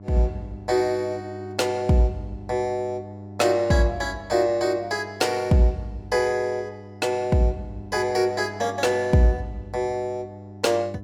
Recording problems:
electrical hum; 50 Hz, harmonics up to 700 Hz, SNR 17 dB

